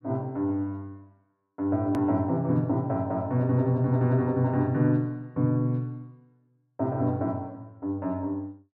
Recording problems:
click at an edit; at 2 s

